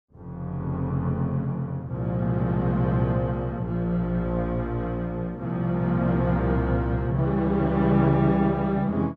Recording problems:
none

